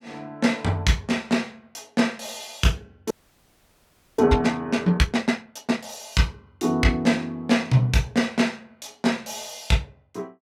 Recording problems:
frozen audio; at 3 s for 1 s

